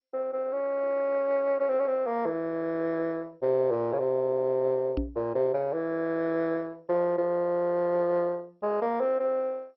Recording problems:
lossy codec; MP2, log-spectral distance 2 dB, nothing above 5.5 kHz
microphone thump; at 5 s; peak +1 dB vs average level

